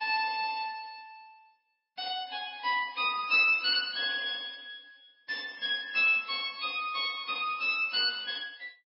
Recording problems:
codec artefacts; MP3, log-spectral distance 5 dB, nothing above 4.5 kHz

